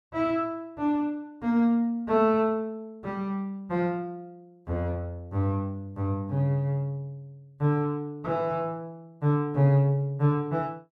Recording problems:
none

